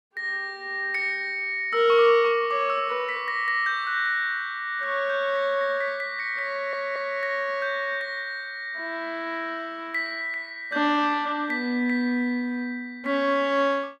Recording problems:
stutter; at 6.5 s

